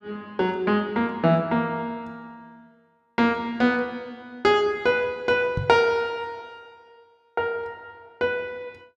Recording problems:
microphone bump; at 5.5 s; peak 0 dB vs average level

